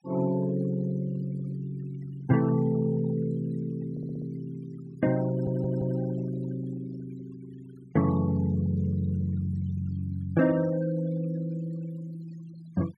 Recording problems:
noise reduction artefacts; signal-to-artefact ratio 21 dB
stutter; at 4 s and at 5.5 s

